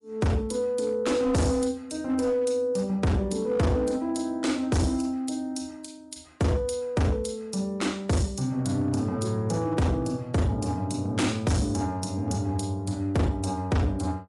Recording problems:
lossy compression; MP3, log-spectral distance 2 dB, nothing above 11 kHz
distorted audio; hard clipping, signal-to-distortion ratio 6 dB

